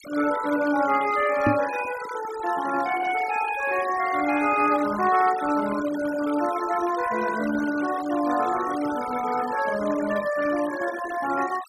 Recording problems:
noise reduction artefacts; signal-to-artefact ratio 13 dB
microphone thump; at 1.5 s; peak +5 dB vs average level

